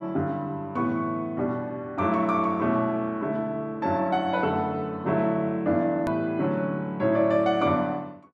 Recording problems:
hard cut with a click; at 6 s

